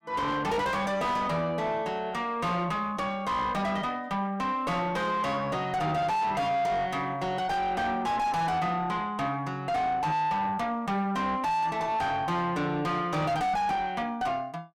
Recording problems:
distortion; soft clipping, signal-to-distortion ratio 5 dB

